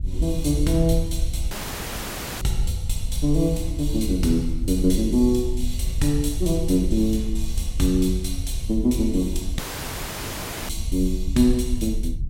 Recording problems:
rumble; below 64 Hz, SNR 5 dB
audio cutting out; at 1.5 s for 1 s and at 9.5 s for 1 s

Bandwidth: 16 kHz